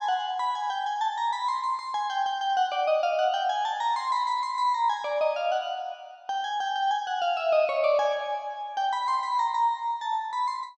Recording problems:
none

